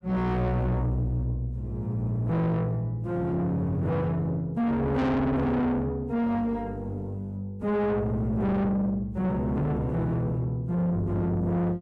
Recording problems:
distorted audio; soft clipping, signal-to-distortion ratio 7 dB

